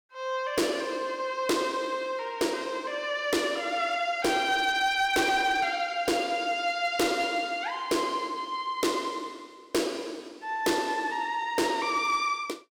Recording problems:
distortion; hard clipping, signal-to-distortion ratio 12 dB

